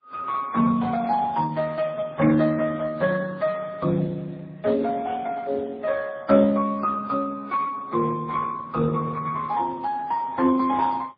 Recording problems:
codec artefacts; Speex, then MP3, log-spectral distance 3 dB, nothing above 4.2 kHz

